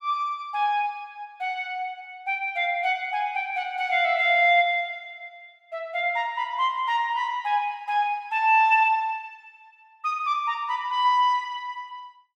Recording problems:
none

